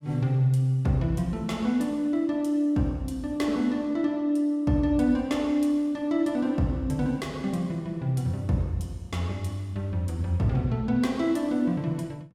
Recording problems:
none

